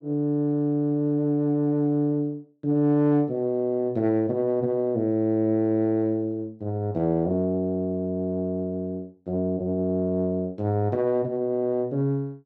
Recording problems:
none

